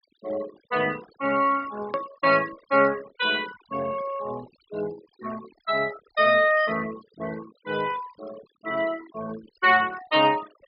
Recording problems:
low-pass filter; nothing above 5.5 kHz
denoising artefacts; signal-to-artefact ratio 18 dB
hard cut with a click; at 2 s

